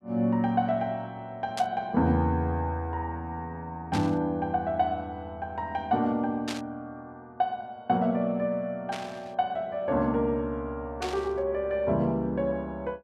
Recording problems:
static burst; 5 times, first at 1.5 s; peak -3 dB vs average level

